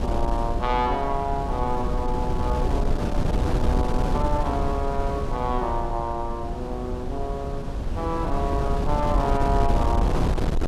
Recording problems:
wind noise; below 180 Hz, SNR -1 dB

